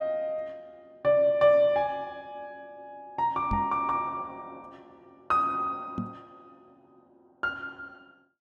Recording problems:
microphone bump; at 3.5 s and at 6 s; peak -1 dB vs average level

